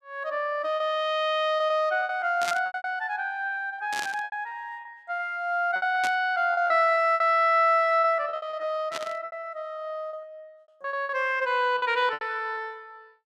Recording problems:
lost packets; 13% of the sound replaced, filled with repeated pitch periods
burst of static; 4 times, first at 2.5 s; peak -1 dB vs average level

